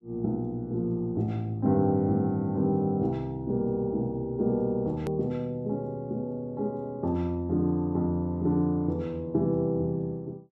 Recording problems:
hard cut with a click; at 5 s

